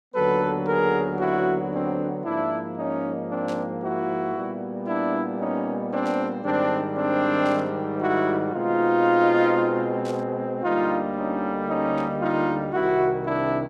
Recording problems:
static burst; 5 times, first at 3.5 s; peak -14 dB vs average level

